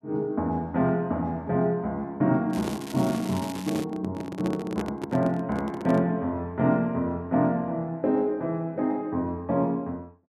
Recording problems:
handling noise; from 2.5 to 6 s; peak -1 dB vs average level
crackle; from 2.5 to 4 s; loose cable, SNR 15 dB

